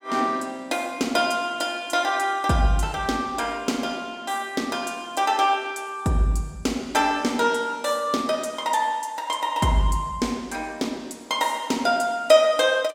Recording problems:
none

